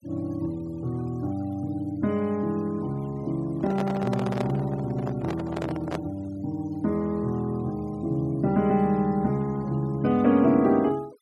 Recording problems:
noise reduction artefacts; signal-to-artefact ratio 25 dB
microphone handling noise; from 3.5 to 6 s; peak -1 dB vs average level

